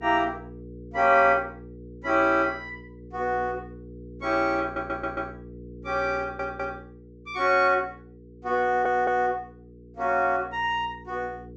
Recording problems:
treble missing; nothing above 8 kHz
hum; 60 Hz, harmonics up to 480 Hz, SNR 19 dB
stutter; at 4.5 s, at 6 s and at 8.5 s

